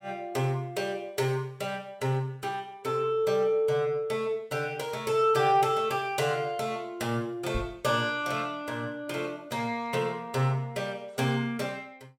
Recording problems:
knock on the microphone; at 7.5 s; peak -1 dB vs average level

